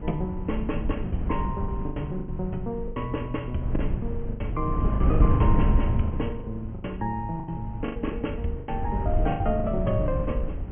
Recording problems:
treble missing; nothing above 3.2 kHz
wind noise; below 120 Hz, SNR -1 dB
packet loss; 11% of the sound replaced, filled with the last packet

